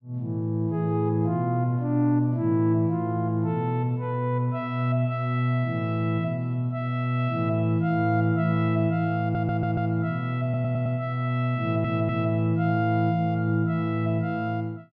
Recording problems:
audio stuttering; at 9 s, at 10 s and at 12 s

